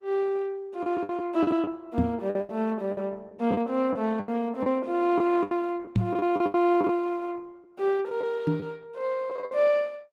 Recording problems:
lossy codec; Opus, log-spectral distance 2 dB
lost packets; 11% of the sound replaced, filled with the last packet
knock on the microphone; at 2 s, at 6 s and at 8.5 s; peak +8 dB vs average level

